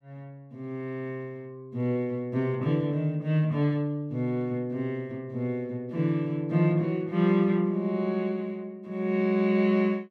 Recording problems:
none

